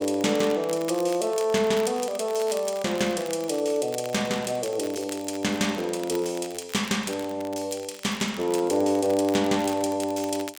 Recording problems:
crackling; vinyl, SNR 17 dB

